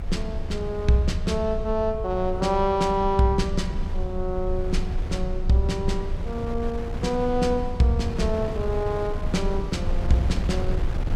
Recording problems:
rumble; below 72 Hz, strongest tone 24 Hz, SNR 7 dB
wind noise; below 270 Hz, SNR 10 dB

